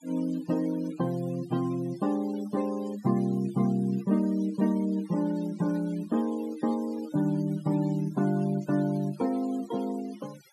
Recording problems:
denoising artefacts; signal-to-artefact ratio 21 dB

